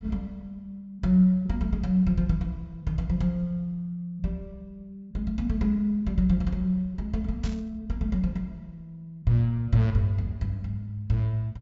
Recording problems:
treble missing; nothing above 8 kHz
static burst; at 7.5 s; peak -12 dB vs average level

